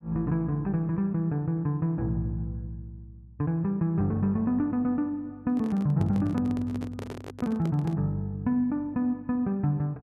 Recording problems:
handling noise; from 5.5 to 8 s; peak -6 dB vs average level

